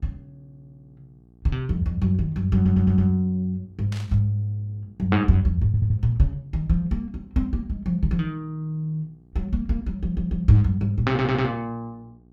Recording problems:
mains hum; 60 Hz, harmonics up to 780 Hz, SNR 30 dB
audio stuttering; 4 times, first at 2.5 s
burst of static; at 4 s; peak -11 dB vs average level

